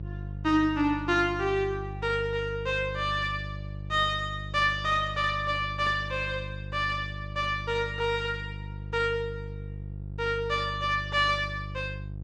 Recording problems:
electrical hum; 50 Hz, harmonics up to 500 Hz, SNR 10 dB

